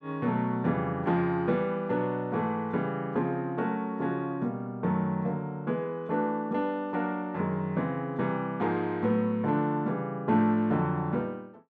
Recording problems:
none

